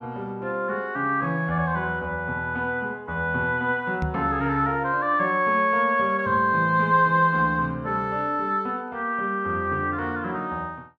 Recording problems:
knock on the microphone; at 4 s; peak 0 dB vs average level

